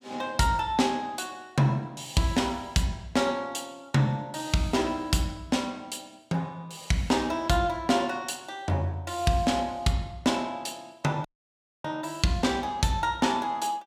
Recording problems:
dropout; at 11 s for 0.5 s

